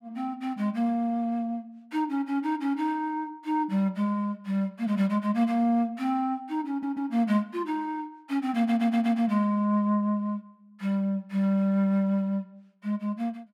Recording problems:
audio stuttering; at 6.5 s and at 8.5 s

